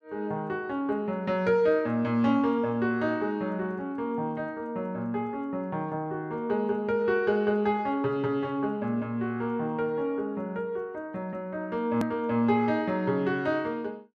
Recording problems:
hard cut with a click; at 12 s

